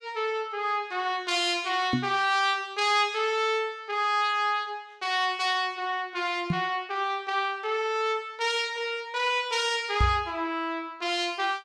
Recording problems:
microphone thump; at 2 s, at 6.5 s and at 10 s; peak +4 dB vs average level

